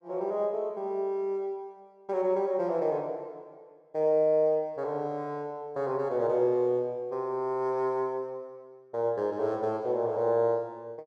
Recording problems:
none

